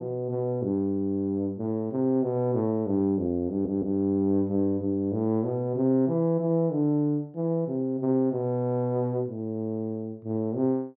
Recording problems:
stutter; at 3.5 s

